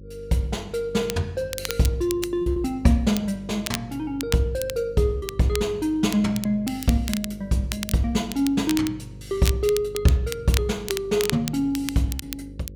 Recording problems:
hum; 50 Hz, harmonics up to 550 Hz, SNR 18 dB
crackle; vinyl, SNR 10 dB
lost packets; 2% of the sound replaced, filled with repeated pitch periods

